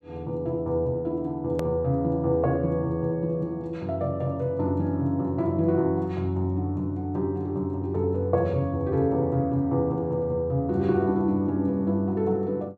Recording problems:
hard cut with a click; at 1.5 s

